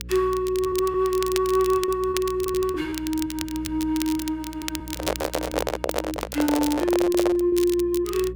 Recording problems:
electrical hum; 60 Hz, harmonics up to 540 Hz, SNR 17 dB
crackling; vinyl, SNR 11 dB
lost packets; 11% of the sound replaced, filled with repeated pitch periods
microphone handling noise; from 5 to 7.5 s; peak +3 dB vs average level

